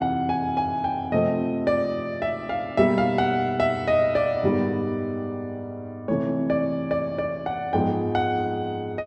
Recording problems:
none

